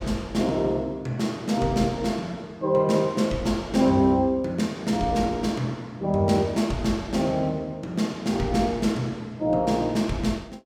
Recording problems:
none

